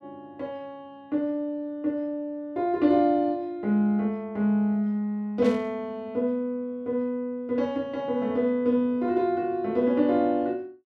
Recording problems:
burst of static; at 5.5 s; peak -12 dB vs average level

